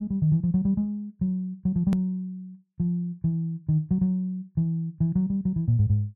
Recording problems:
hard cut with a click; at 2 s

